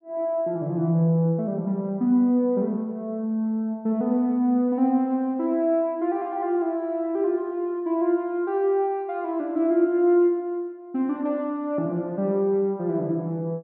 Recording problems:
none

